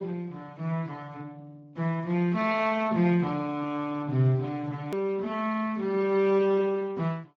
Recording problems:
lossy compression; Speex, log-spectral distance 2 dB, nothing above 17.7 kHz
click at an edit; at 5 s

